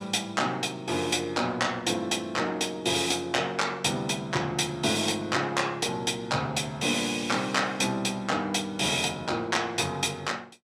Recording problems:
none

